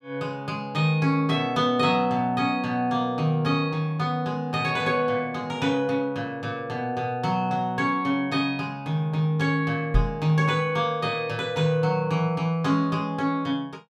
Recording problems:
knock on the microphone; at 10 s; peak +6 dB vs average level

